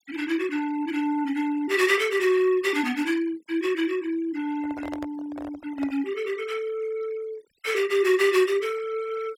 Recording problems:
denoising artefacts; signal-to-artefact ratio 21 dB
microphone handling noise; from 4.5 to 6 s; peak -7 dB vs average level

